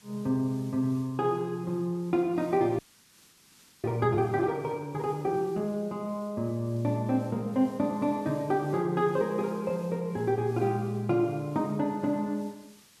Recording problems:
hiss; SNR 27 dB
audio freezing; at 3 s for 1 s

